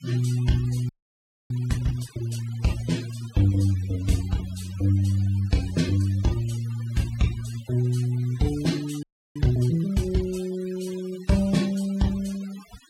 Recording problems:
denoising artefacts; signal-to-artefact ratio 18 dB
audio freezing; at 1 s for 0.5 s and at 9 s

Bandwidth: 16 kHz